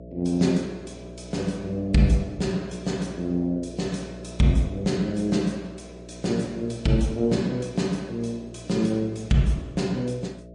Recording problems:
codec artefacts; MP3, log-spectral distance 2 dB, nothing above 8.7 kHz
hum; 60 Hz, harmonics up to 660 Hz, SNR 16 dB

